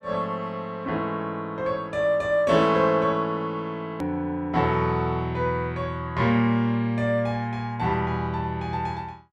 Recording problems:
edit click; at 4 s

